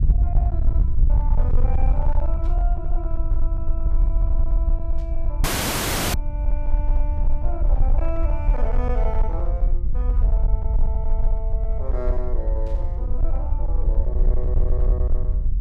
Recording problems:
distortion; hard clipping, uneven, signal-to-distortion ratio 10 dB
rumble; below 52 Hz, SNR -11 dB
burst of static; at 2.5 s, at 5 s and at 13 s; peak -13 dB vs average level
dropout; at 5.5 s for 0.5 s

